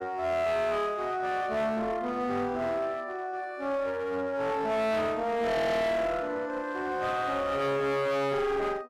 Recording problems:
distorted audio; hard clipping, uneven, signal-to-distortion ratio 6 dB

